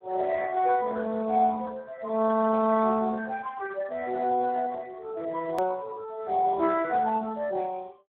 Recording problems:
phone line; 260 Hz to 2.3 kHz, Speex
click at an edit; at 5.5 s

